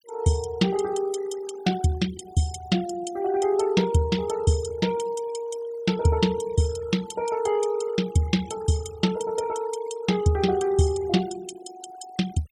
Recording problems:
denoising artefacts; signal-to-artefact ratio 17 dB

